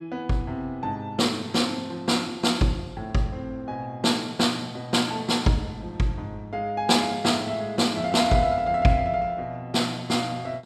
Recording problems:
none

